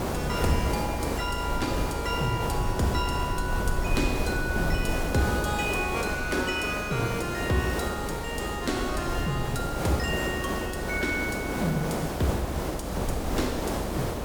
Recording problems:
hiss; slope -7 dB per octave, SNR 2 dB
rumble; below 78 Hz, SNR 6 dB

